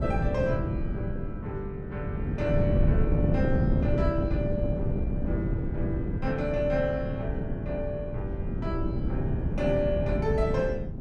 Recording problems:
wind on the microphone; below 200 Hz, SNR -2 dB

